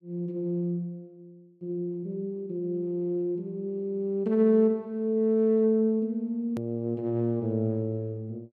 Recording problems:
edit click; at 6.5 s

